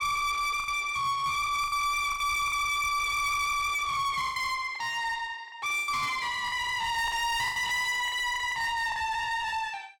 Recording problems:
distortion; soft clipping, signal-to-distortion ratio 8 dB
packet loss; 9% of the sound replaced, filled with the last packet

